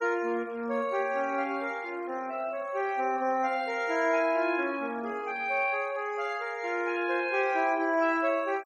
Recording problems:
noise reduction artefacts; signal-to-artefact ratio 23 dB

